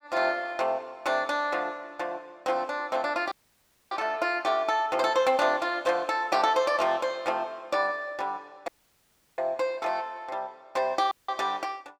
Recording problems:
dropout; at 3.5 s for 0.5 s, at 8.5 s for 0.5 s and at 11 s

